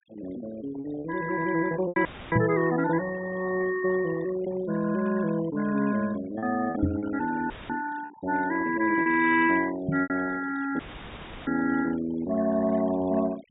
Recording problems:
treble missing; nothing above 4 kHz
denoising artefacts; signal-to-artefact ratio 16 dB
packet loss; 4% of the sound replaced, filled with repeated pitch periods
audio cutting out; at 2 s, at 7.5 s and at 11 s for 0.5 s; filled with static
knock on the microphone; at 2.5 s, at 7 s and at 10 s; peak +5 dB vs average level

